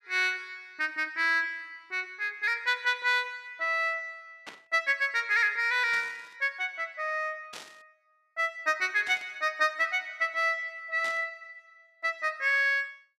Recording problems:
static burst; 5 times, first at 4.5 s; peak -10 dB vs average level

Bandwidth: 14 kHz